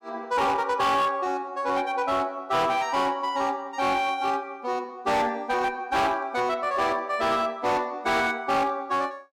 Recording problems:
distorted audio; hard clipping, uneven, signal-to-distortion ratio 10 dB

